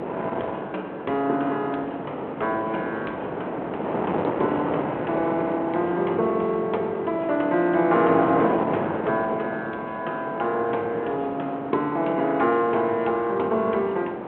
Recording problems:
telephone audio; 300 Hz to 3.7 kHz, G.726
wind on the microphone; below 860 Hz, SNR 5 dB

